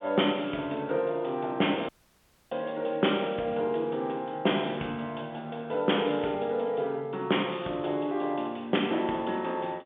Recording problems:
telephone audio; 190 Hz to 3.5 kHz, G.711
audio cutting out; at 2 s for 0.5 s

